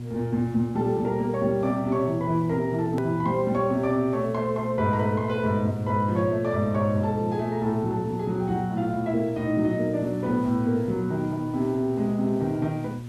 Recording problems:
electrical hum; 60 Hz, harmonics up to 600 Hz, SNR 10 dB
hiss; slope -4 dB per octave, SNR 25 dB
edit click; at 3 s

